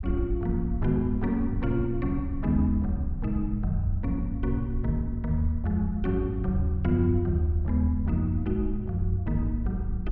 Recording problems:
rumble; below 68 Hz, SNR 8 dB

